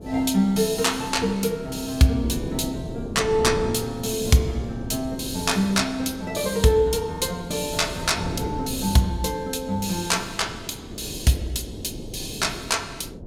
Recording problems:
wind on the microphone; below 380 Hz, SNR 11 dB

